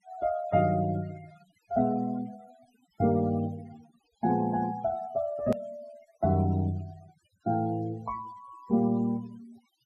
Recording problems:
noise reduction artefacts; signal-to-artefact ratio 22 dB
hard cut with a click; at 5.5 s

